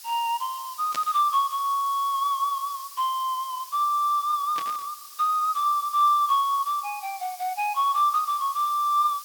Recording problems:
hiss; SNR 16 dB
burst of static; at 1 s and at 4.5 s; peak -5 dB vs average level

